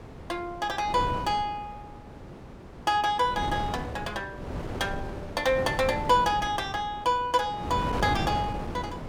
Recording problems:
wind on the microphone; below 580 Hz, SNR 9 dB

